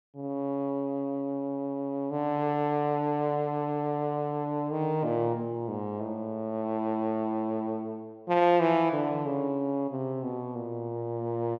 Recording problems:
none

